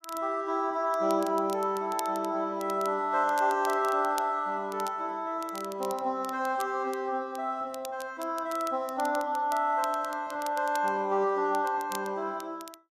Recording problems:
crackling; vinyl, SNR 18 dB

